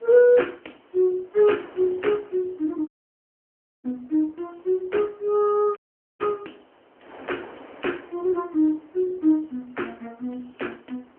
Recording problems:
phone line; 220 Hz to 3.2 kHz, AMR-NB
wind on the microphone; below 1.2 kHz, SNR 25 dB
audio cutting out; at 3 s for 1 s and at 6 s

